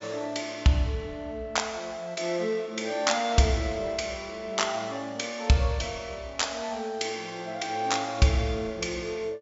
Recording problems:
low-pass filter; nothing above 7.5 kHz

